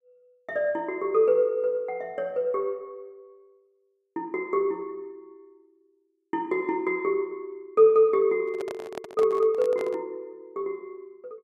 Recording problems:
handling noise; from 8.5 to 10 s; peak -7 dB vs average level

